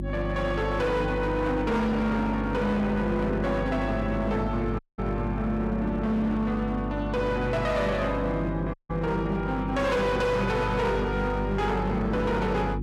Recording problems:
distorted audio; hard clipping, signal-to-distortion ratio 10 dB
electrical hum; 50 Hz, harmonics up to 500 Hz, SNR 6 dB
audio cutting out; at 5 s and at 8.5 s

